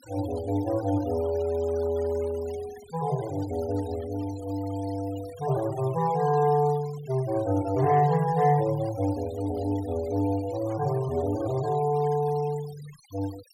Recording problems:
noise reduction artefacts; signal-to-artefact ratio 20 dB

